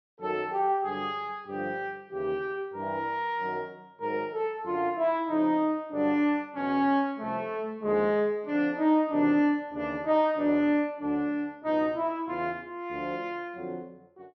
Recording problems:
treble cut off; nothing above 5.9 kHz

